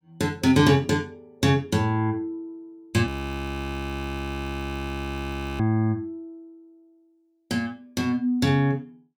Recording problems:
audio freezing; at 3 s for 2.5 s

